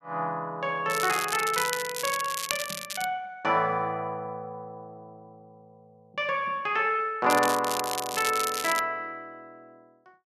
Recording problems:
crackle; from 1 to 3 s and from 7.5 to 9 s; loose cable, SNR 5 dB

